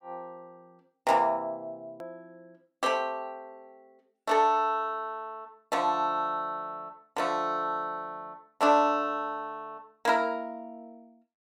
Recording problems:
click at an edit; at 2 s

